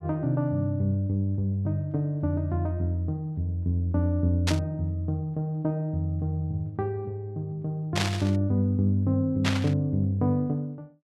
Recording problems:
burst of static; at 4.5 s, at 8 s and at 9.5 s; peak +4 dB vs average level

